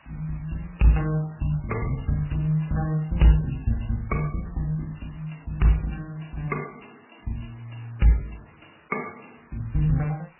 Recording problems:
lossy codec; MP3, then AAC, log-spectral distance 12 dB, nothing above 2.9 kHz
background hiss; SNR 27 dB

